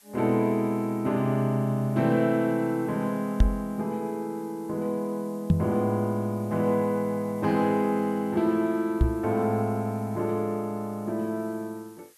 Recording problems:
background hiss; slope +1 dB per octave, SNR 27 dB
microphone bump; at 3.5 s, at 5.5 s and at 9 s; peak +9 dB vs average level

